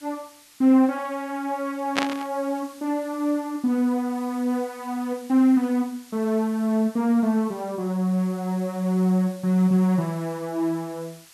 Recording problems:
hiss; slope +2 dB per octave, SNR 24 dB
burst of static; at 2 s; peak +5 dB vs average level

